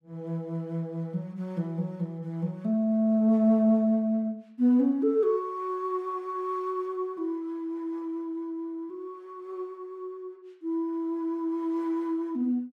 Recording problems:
none

